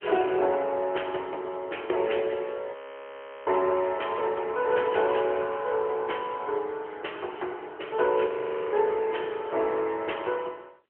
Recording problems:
telephone audio; 320 Hz to 3.2 kHz, AMR-NB
audio freezing; at 2.5 s for 0.5 s and at 8.5 s

